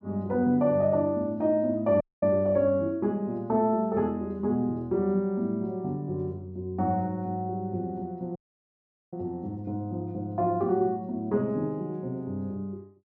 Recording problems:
audio cutting out; at 2 s and at 8.5 s for 1 s

